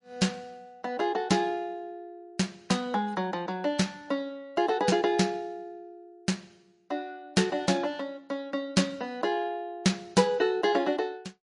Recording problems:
codec artefacts; MP3, log-spectral distance 2 dB, nothing above 10.4 kHz

